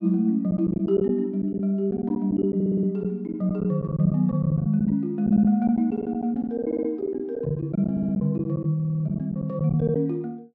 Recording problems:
lost packets; 10% of the sound replaced, filled with silence
stutter; 4 times, first at 2.5 s

